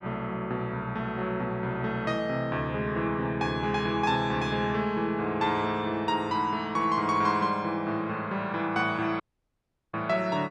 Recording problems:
dropout; at 9 s for 0.5 s

